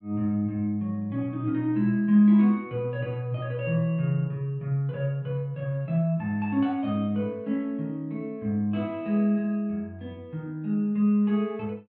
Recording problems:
none

